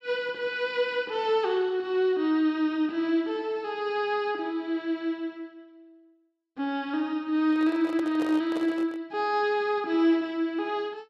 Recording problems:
microphone handling noise; from 7.5 to 9 s; peak -5 dB vs average level

